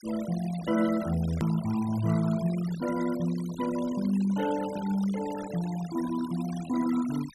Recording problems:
denoising artefacts; signal-to-artefact ratio 15 dB
hard cut with a click; at 1.5 s

